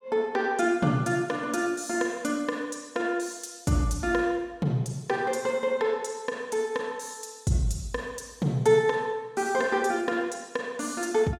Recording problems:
none

